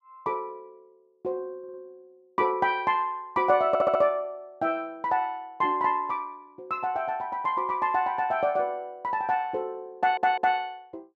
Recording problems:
audio stuttering; at 1.5 s, at 3.5 s and at 10 s

